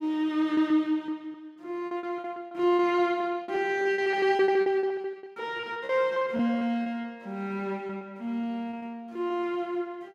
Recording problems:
lost packets; 15% of the sound replaced, filled with repeated pitch periods

